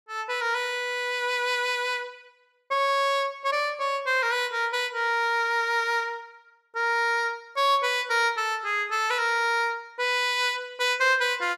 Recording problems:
none

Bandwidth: 15 kHz